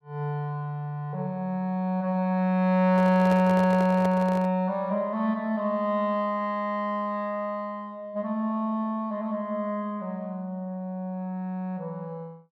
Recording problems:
handling noise; from 3 to 4.5 s; peak -4 dB vs average level

